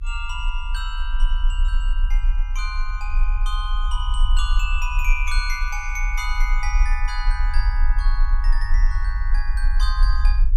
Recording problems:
low-frequency rumble; below 38 Hz, strongest tone 32 Hz, SNR -6 dB

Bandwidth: 15.5 kHz